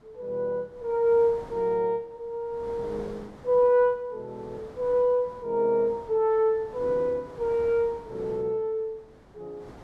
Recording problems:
wind noise; below 830 Hz, SNR 22 dB

